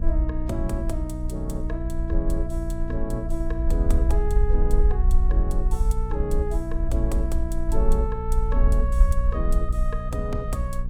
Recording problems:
mains hum; 60 Hz, harmonics up to 480 Hz, SNR 3 dB
rumble; below 52 Hz, SNR -5 dB

